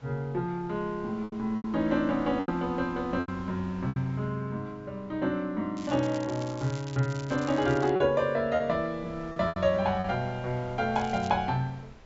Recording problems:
treble missing; nothing above 8 kHz
wind on the microphone; below 1 kHz, SNR 22 dB
lost packets; 5% of the sound replaced, filled with repeated pitch periods
crackling; from 6 to 8 s and at 11 s; loose cable, SNR 19 dB

